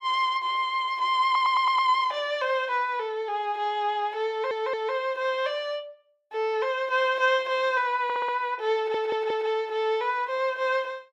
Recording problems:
stutter; 4 times, first at 1 s

